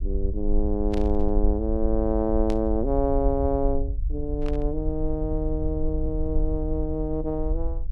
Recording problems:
low-frequency rumble; below 56 Hz, strongest tone 20 Hz, SNR 3 dB
burst of static; at 1 s, at 2.5 s and at 4.5 s; peak -9 dB vs average level

